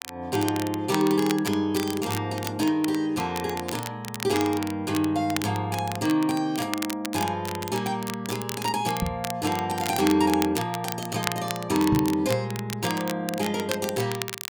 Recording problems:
crackle; vinyl, SNR 9 dB
knock on the microphone; at 9 s and at 12 s; peak +5 dB vs average level

